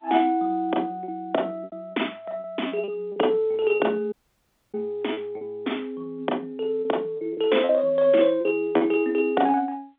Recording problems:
telephone audio; 240 Hz to 3.6 kHz, G.711
lost packets; 7% of the sound replaced, filled with repeated pitch periods
audio cutting out; at 4 s for 0.5 s

